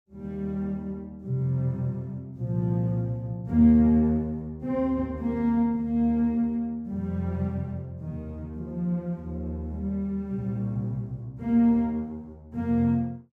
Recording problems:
none

